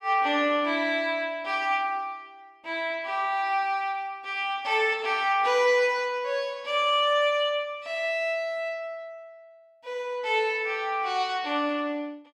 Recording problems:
none

